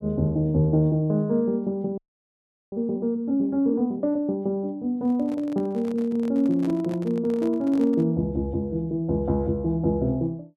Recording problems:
audio freezing; at 2 s for 0.5 s
handling noise; from 5 to 8 s; peak -10 dB vs average level

